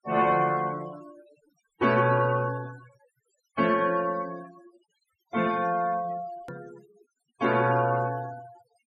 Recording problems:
noise reduction artefacts; signal-to-artefact ratio 19 dB
hard cut with a click; at 6.5 s

